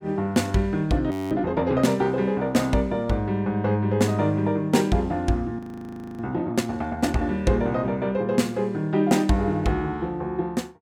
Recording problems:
audio freezing; at 1 s and at 5.5 s for 0.5 s

